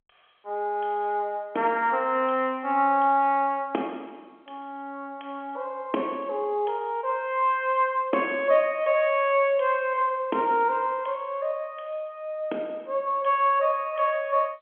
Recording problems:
phone line; 280 Hz to 3.3 kHz, G.711

